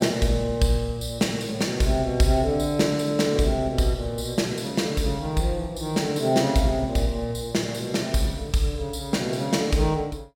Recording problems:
none

